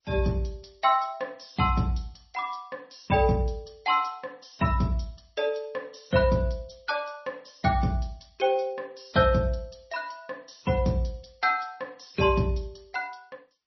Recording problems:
codec artefacts; G.722, then MP3, log-spectral distance 5 dB, nothing above 5.8 kHz

